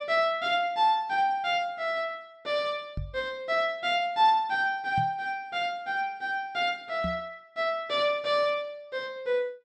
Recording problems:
knock on the microphone; at 3 s, at 5 s and at 7 s; peak -2 dB vs average level

